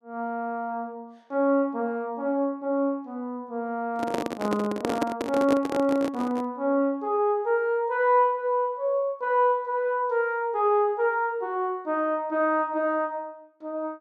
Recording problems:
handling noise; from 4 to 6.5 s; peak +3 dB vs average level

